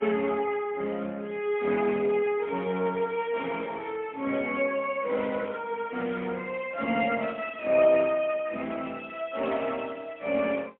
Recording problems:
phone line; 240 Hz to 3.5 kHz, AMR-NB, then MP3

